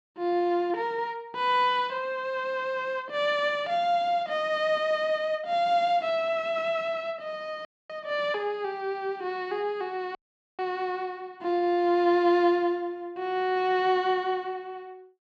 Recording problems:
audio cutting out; at 7.5 s and at 10 s

